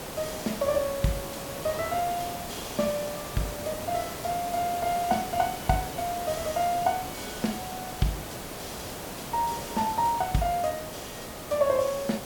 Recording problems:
hiss; slope -5 dB per octave, SNR 7 dB

